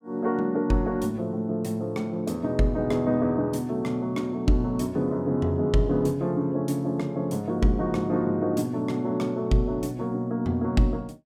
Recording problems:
none

